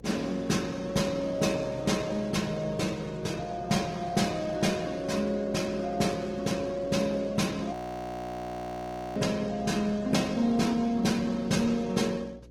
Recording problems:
lossy codec; Opus, log-spectral distance 4 dB, nothing above 18.9 kHz
hum; 60 Hz, harmonics up to 540 Hz, SNR 23 dB
frozen audio; at 7.5 s for 1.5 s

